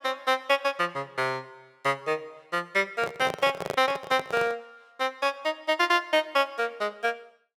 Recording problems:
handling noise; from 3 to 4.5 s; peak 0 dB vs average level

